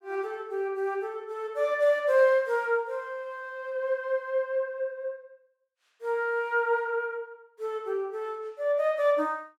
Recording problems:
none

